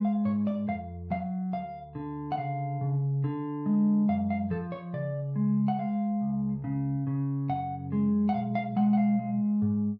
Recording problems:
none

